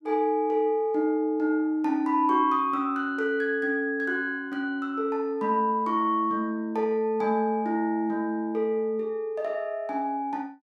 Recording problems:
none

